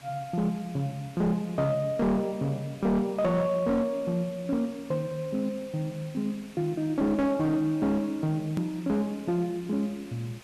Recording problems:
distorted audio; hard clipping, signal-to-distortion ratio 11 dB
background hiss; SNR 22 dB
edit click; at 8.5 s

